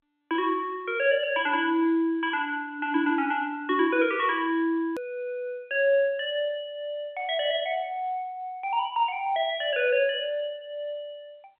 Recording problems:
telephone audio; 240 Hz to 3.4 kHz, G.711
click at an edit; at 5 s

